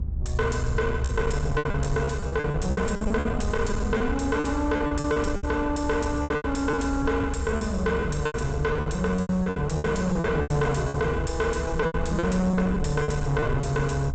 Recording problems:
treble missing; nothing above 8 kHz
distortion; soft clipping, signal-to-distortion ratio 11 dB
mains hum; 50 Hz, harmonics up to 400 Hz, SNR 17 dB
rumble; below 110 Hz, SNR 6 dB
lost packets; 15% of the sound replaced, filled with repeated pitch periods

